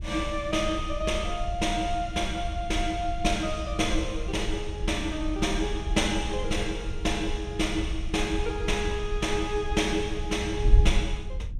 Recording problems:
wind noise; below 62 Hz, SNR 4 dB

